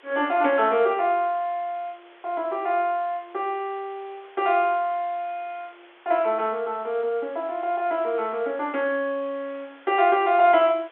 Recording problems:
telephone audio; 320 Hz to 3.6 kHz, G.711
hiss; SNR 27 dB

